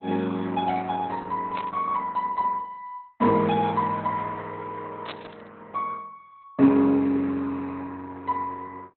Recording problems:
lossy compression; Opus, log-spectral distance 3 dB, nothing above 3.4 kHz
burst of static; at 1.5 s and at 5 s; peak -5 dB vs average level

